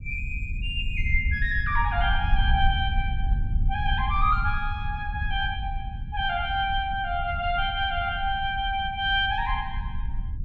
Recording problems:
rumble; below 76 Hz, SNR 4 dB

